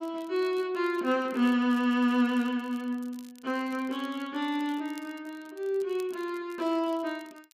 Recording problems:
crackling; vinyl, SNR 27 dB

